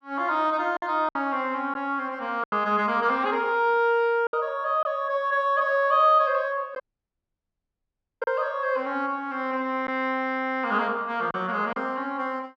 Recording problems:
packet loss; 3% of the sound replaced, filled with silence
dropout; at 7 s for 1.5 s

